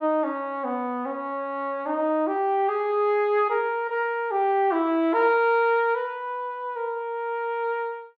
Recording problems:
none

